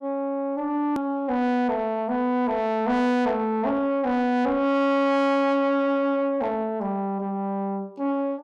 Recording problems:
distortion; soft clipping, signal-to-distortion ratio 10 dB
click at an edit; at 1 s

